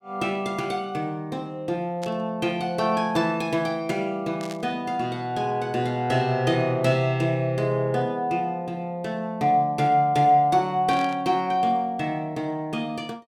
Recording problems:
static burst; at 2 s, at 4.5 s and at 11 s; peak -10 dB vs average level

